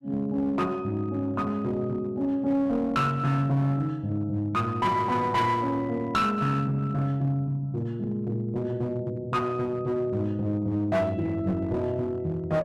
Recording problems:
distorted audio; hard clipping, uneven, signal-to-distortion ratio 11 dB

